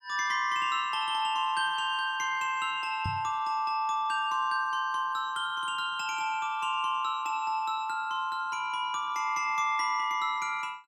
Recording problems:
microphone thump; at 3 s; peak -2 dB vs average level

